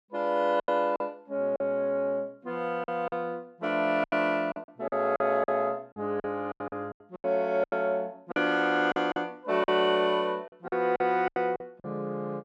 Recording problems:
lost packets; 12% of the sound replaced, filled with silence

